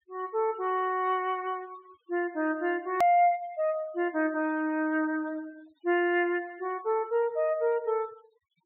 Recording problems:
treble missing; nothing above 4 kHz
denoising artefacts; signal-to-artefact ratio 27 dB
hard cut with a click; at 3 s

